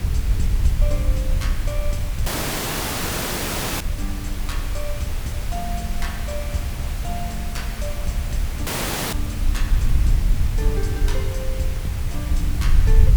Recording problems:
hiss; slope -3 dB per octave, SNR 4 dB
low-frequency rumble; below 68 Hz, SNR -7 dB
audio cutting out; at 2.5 s for 1.5 s and at 8.5 s

